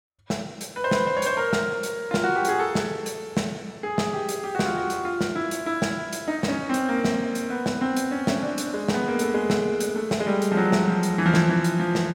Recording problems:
none

